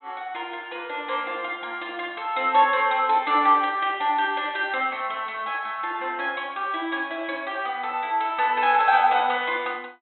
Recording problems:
low-pass filter; nothing above 4 kHz

